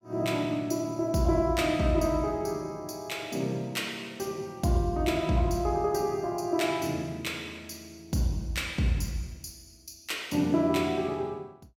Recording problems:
none

